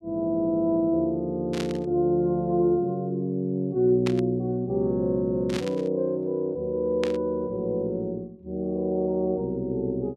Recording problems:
burst of static; 4 times, first at 1.5 s; peak -3 dB vs average level

